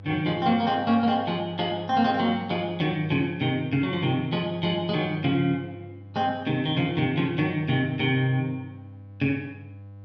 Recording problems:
hum; 50 Hz, harmonics up to 600 Hz, SNR 19 dB

